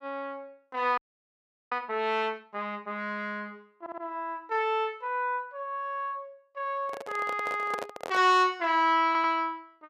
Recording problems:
audio freezing; at 1 s for 0.5 s
audio stuttering; at 4 s and at 9 s
handling noise; from 7 to 8 s; peak -2 dB vs average level

